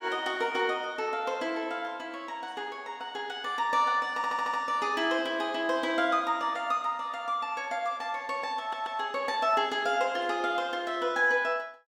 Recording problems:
audio stuttering; at 4 s and at 8.5 s

